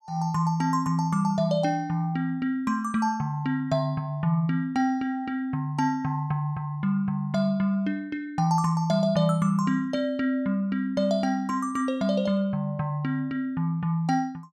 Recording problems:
none

